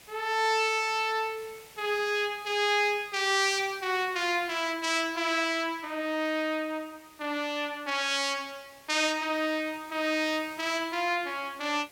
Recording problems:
hiss; SNR 23 dB

